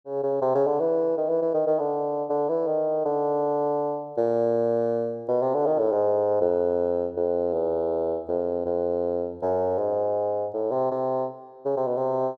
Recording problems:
none

